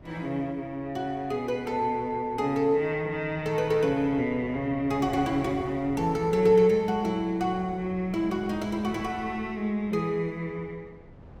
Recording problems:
wind on the microphone; below 400 Hz, SNR 19 dB

